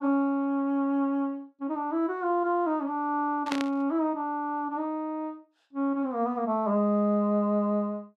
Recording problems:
static burst; at 3.5 s; peak -1 dB vs average level

